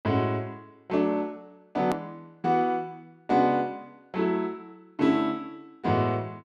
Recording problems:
edit click; at 2 s

